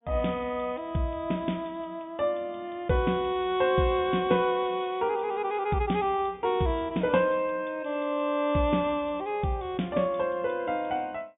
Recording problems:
low-pass filter; nothing above 3.7 kHz

